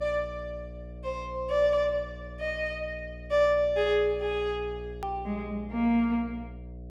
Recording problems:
electrical hum; 60 Hz, harmonics up to 720 Hz, SNR 15 dB
click at an edit; at 5 s

